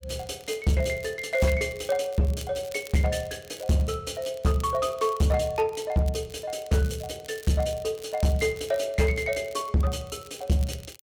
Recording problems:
distortion; hard clipping, signal-to-distortion ratio 11 dB
crackle; vinyl, SNR 21 dB

